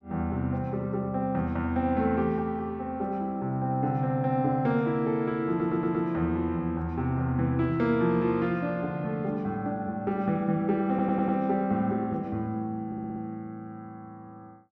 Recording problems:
audio stuttering; at 5.5 s, at 11 s and at 13 s

